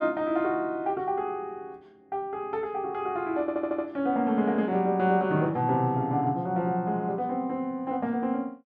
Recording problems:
stutter; at 3.5 s

